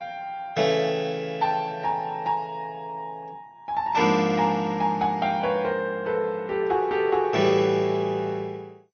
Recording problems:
lossy compression; MP2, then MP3, log-spectral distance 2 dB, nothing above 6.2 kHz

